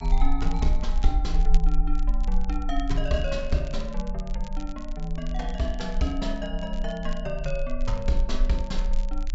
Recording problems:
low-pass filter; nothing above 8 kHz
low-frequency rumble; below 36 Hz, strongest tone 20 Hz, SNR 0 dB
crackle; vinyl, SNR 20 dB

